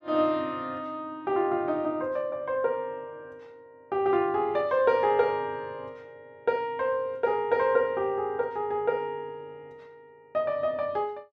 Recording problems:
none

